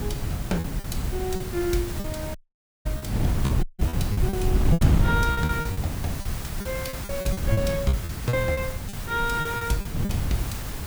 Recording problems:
background hiss; slope -2 dB per octave, SNR 8 dB
wind on the microphone; below 160 Hz, SNR -1 dB
lost packets; 13% of the sound replaced, filled with repeated pitch periods
dropout; at 2.5 s for 0.5 s and at 3.5 s

